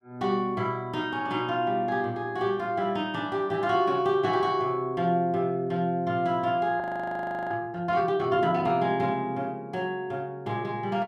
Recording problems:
frozen audio; at 7 s for 0.5 s

